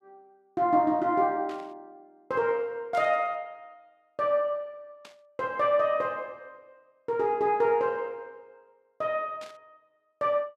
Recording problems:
static burst; 4 times, first at 1.5 s; peak -15 dB vs average level

